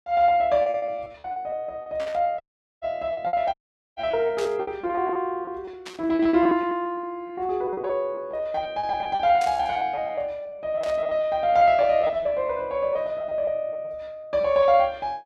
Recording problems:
lost packets; 16% of the sound replaced, filled with repeated pitch periods
static burst; 5 times, first at 2 s; peak -8 dB vs average level
dropout; at 2.5 s and at 3.5 s

